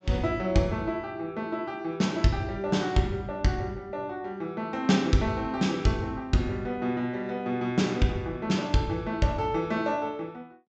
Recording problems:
low-pass filter; nothing above 8 kHz

